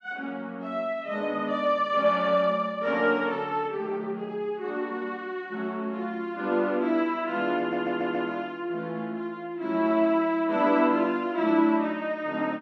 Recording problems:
stutter; at 7.5 s

